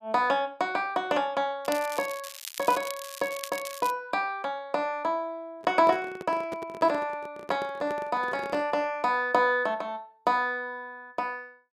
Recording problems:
crackling; from 1.5 to 4 s; loose cable, SNR 11 dB
handling noise; from 5.5 to 9 s; peak -6 dB vs average level

